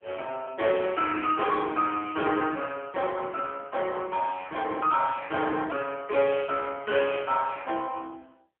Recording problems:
phone line; 280 Hz to 3.3 kHz, AMR-NB

